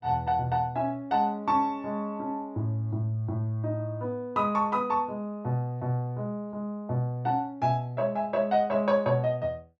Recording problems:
none

